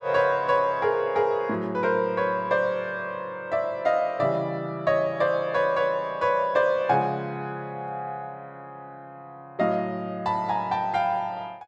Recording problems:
none

